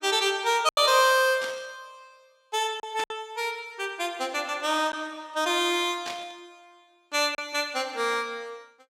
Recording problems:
lost packets; 3% of the sound replaced, filled with silence
burst of static; at 1.5 s, at 3 s and at 6 s; peak -6 dB vs average level

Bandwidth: 16.5 kHz